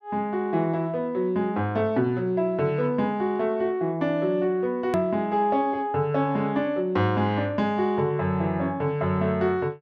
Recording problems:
hard cut with a click; at 5 s

